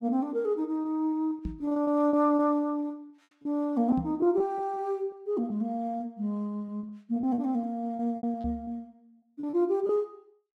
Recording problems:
packet loss; 10% of the sound replaced, filled with repeated pitch periods
microphone thump; at 1.5 s, at 4 s and at 8.5 s; peak -1 dB vs average level

